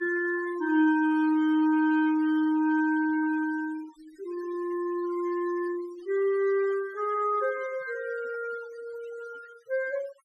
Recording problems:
denoising artefacts; signal-to-artefact ratio 22 dB

